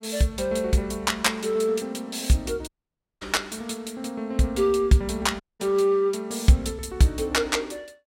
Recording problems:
dropout; at 2.5 s for 0.5 s and at 5.5 s

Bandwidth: 16 kHz